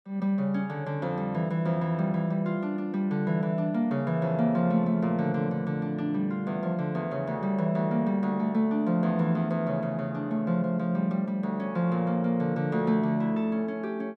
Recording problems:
none

